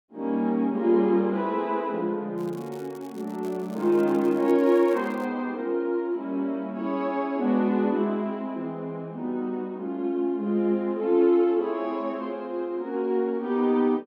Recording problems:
crackle; from 2.5 to 5.5 s; loose cable, SNR 27 dB

